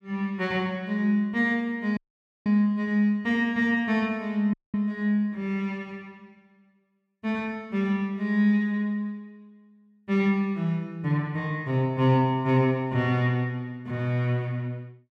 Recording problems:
dropout; at 2 s and at 4.5 s

